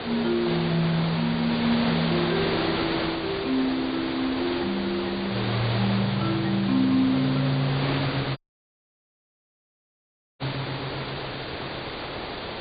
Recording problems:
low-pass filter; nothing above 4.7 kHz
background hiss; SNR 4 dB
audio cutting out; at 8.5 s for 2 s

